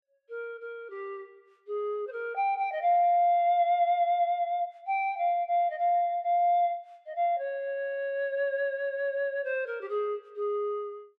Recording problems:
none

